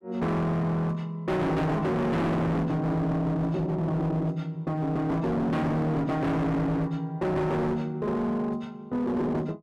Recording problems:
distorted audio; hard clipping, signal-to-distortion ratio 6 dB

